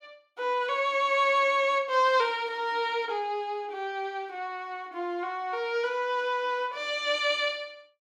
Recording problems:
none

